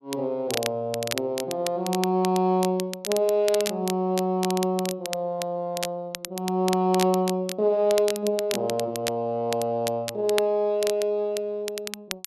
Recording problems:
crackling; vinyl, SNR 10 dB

